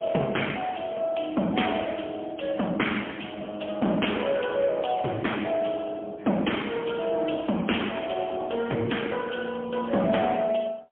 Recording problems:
phone line; 220 Hz to 3.3 kHz, AMR-NB, then MP3

